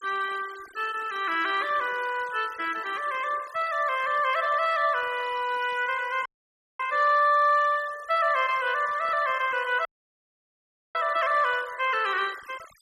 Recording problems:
denoising artefacts; signal-to-artefact ratio 20 dB
audio cutting out; at 6.5 s for 0.5 s and at 10 s for 1 s

